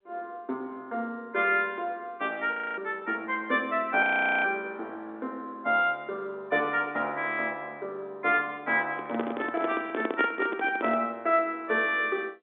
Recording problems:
phone line; 190 Hz to 3.6 kHz, G.711
frozen audio; at 2.5 s and at 4 s
handling noise; from 9 to 11 s; peak +3 dB vs average level

